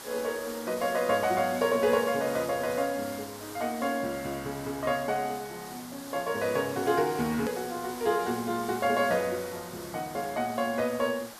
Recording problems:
hiss; SNR 13 dB
hard cut with a click; at 7.5 s

